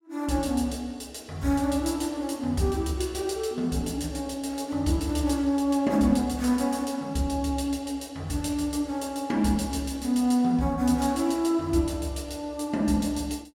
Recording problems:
none

